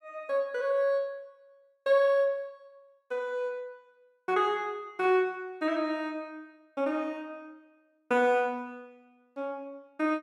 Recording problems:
none

